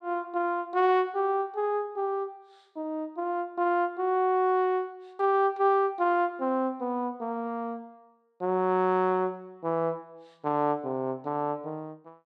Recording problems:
none

